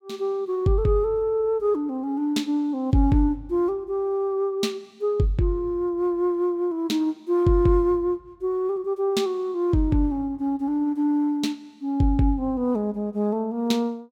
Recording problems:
none

